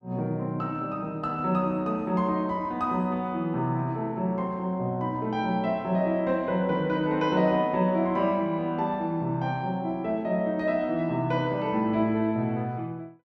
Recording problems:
none

